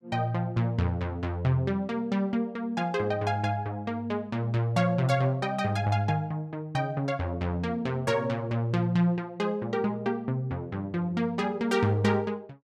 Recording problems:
none

